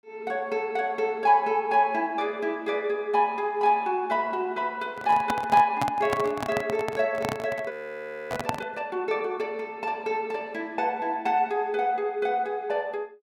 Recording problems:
handling noise; from 5 to 9 s; peak +2 dB vs average level
frozen audio; at 7.5 s for 0.5 s

